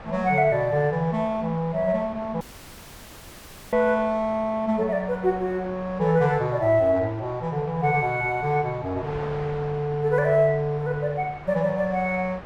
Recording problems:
wind on the microphone; below 1.3 kHz, SNR 18 dB
dropout; at 2.5 s for 1.5 s

